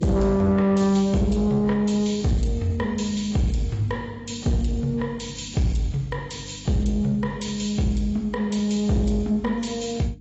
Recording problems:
lossy codec; AAC, log-spectral distance 4 dB, nothing above 7.6 kHz
distorted audio; soft clipping, signal-to-distortion ratio 11 dB
electrical hum; 50 Hz, harmonics up to 300 Hz, SNR 22 dB

